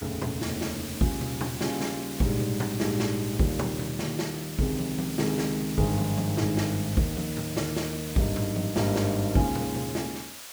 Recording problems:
background hiss; slope +1 dB per octave, SNR 9 dB

